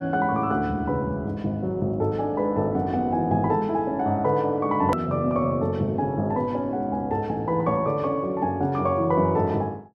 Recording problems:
click at an edit; at 5 s

